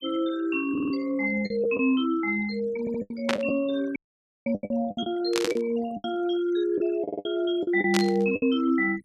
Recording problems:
denoising artefacts; signal-to-artefact ratio 19 dB
packet loss; 10% of the sound replaced, filled with the last packet
stutter; at 0.5 s, at 3 s and at 7 s
burst of static; at 3.5 s, at 5.5 s and at 8 s; peak +4 dB vs average level
dropout; at 4 s for 0.5 s

